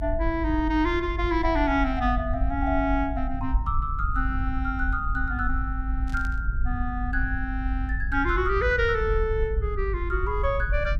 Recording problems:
low-frequency rumble; below 60 Hz, SNR 3 dB
static burst; at 6 s; peak -16 dB vs average level

